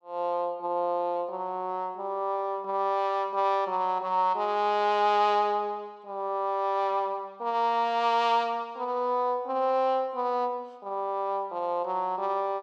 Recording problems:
none

